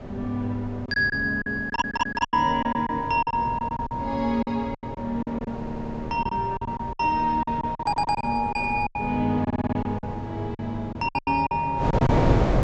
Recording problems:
treble cut off; nothing above 8 kHz
wind on the microphone; below 540 Hz, SNR 7 dB
packet loss; 13% of the sound replaced, filled with silence
audio stuttering; 4 times, first at 1.5 s

